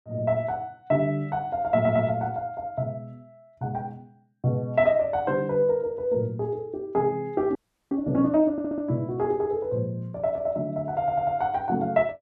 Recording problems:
stutter; at 2 s, at 8.5 s and at 11 s
frozen audio; at 7.5 s

